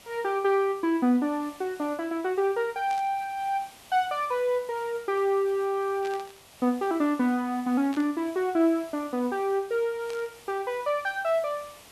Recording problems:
hiss; slope -2 dB per octave, SNR 22 dB
burst of static; 4 times, first at 3 s; peak -12 dB vs average level

